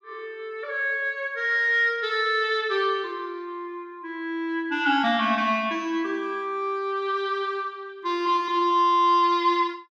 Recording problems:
none

